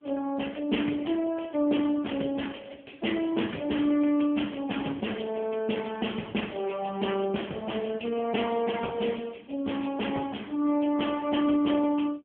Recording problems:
telephone audio; 150 Hz to 3.2 kHz, AMR-NB

